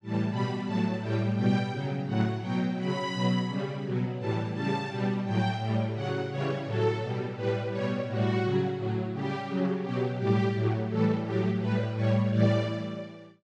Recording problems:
none

